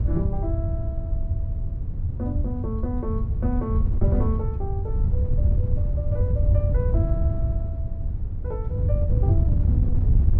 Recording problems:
wind on the microphone; below 98 Hz, SNR -9 dB

